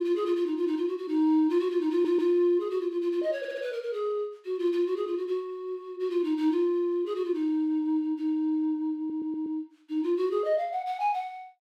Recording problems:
audio stuttering; at 2 s, at 3.5 s and at 9 s

